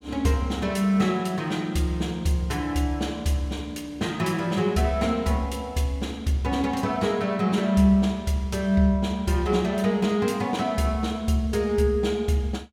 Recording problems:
none

